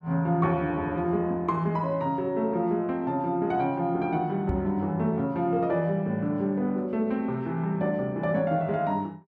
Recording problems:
microphone bump; at 4.5 s; peak 0 dB vs average level

